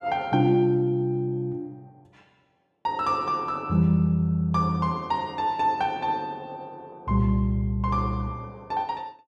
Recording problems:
none

